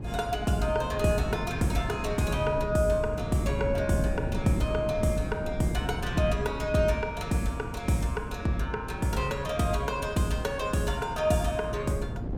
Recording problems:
wind on the microphone; below 250 Hz, SNR 8 dB

